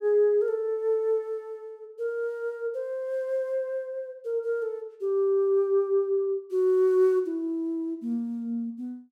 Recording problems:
none

